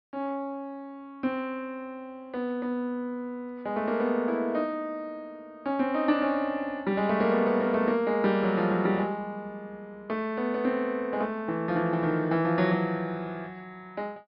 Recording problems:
treble cut off; nothing above 5.5 kHz

